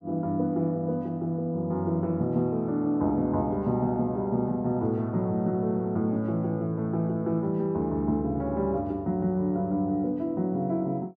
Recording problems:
none

